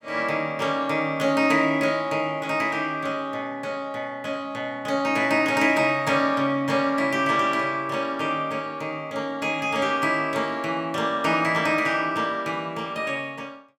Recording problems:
none

